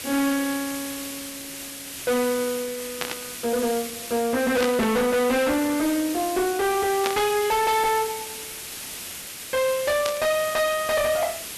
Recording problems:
distortion; hard clipping, signal-to-distortion ratio 8 dB
background hiss; SNR 9 dB
static burst; 4 times, first at 3 s; peak +1 dB vs average level

